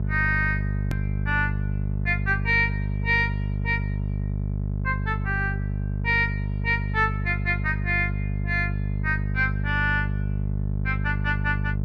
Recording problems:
hum; 50 Hz, harmonics up to 450 Hz, SNR 2 dB
click at an edit; at 1 s

